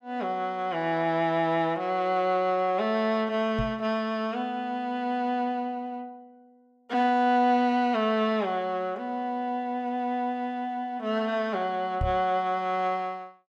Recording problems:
microphone thump; at 3.5 s and at 12 s; peak 0 dB vs average level

